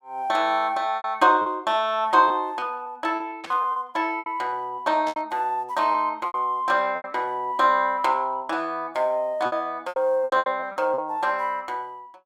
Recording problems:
packet loss; 9% of the sound replaced, filled with repeated pitch periods
static burst; at 3.5 s and at 5 s; peak -9 dB vs average level

